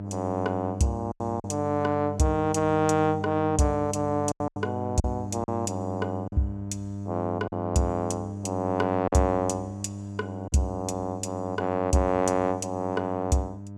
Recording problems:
hum; 50 Hz, harmonics up to 900 Hz, SNR 8 dB
lost packets; 4% of the sound replaced, filled with silence

